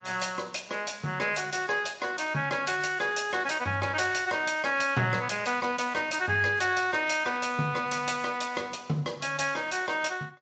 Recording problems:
lossy compression; Speex, then MP3, log-spectral distance 8 dB, nothing above 7.3 kHz

